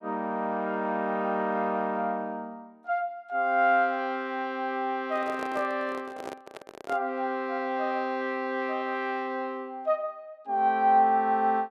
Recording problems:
handling noise; from 5 to 7 s; peak -5 dB vs average level

